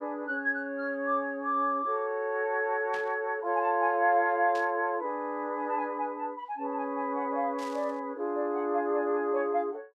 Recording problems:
burst of static; at 3 s, at 4.5 s and at 7.5 s; peak -11 dB vs average level

